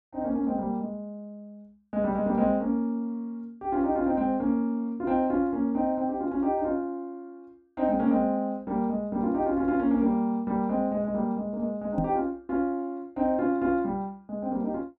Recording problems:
knock on the microphone; at 12 s; peak +1 dB vs average level

